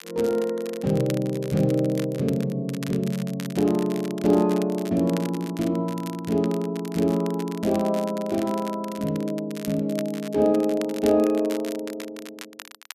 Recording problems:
crackling; vinyl, SNR 17 dB

